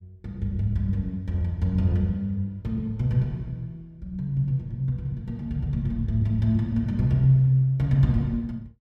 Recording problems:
none

